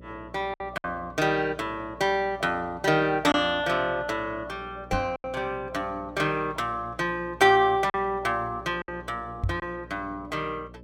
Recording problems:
hum; 60 Hz, harmonics up to 600 Hz, SNR 20 dB
lost packets; 3% of the sound replaced, filled with silence
knock on the microphone; at 5 s and at 9.5 s; peak +2 dB vs average level

